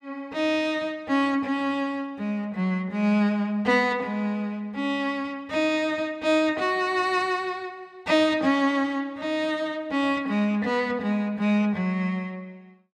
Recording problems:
none

